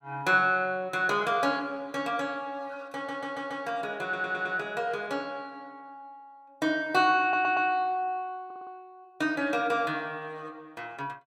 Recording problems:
stutter; 4 times, first at 3 s

